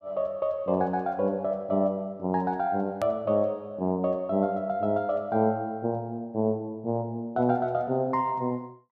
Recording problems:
hard cut with a click; at 3 s

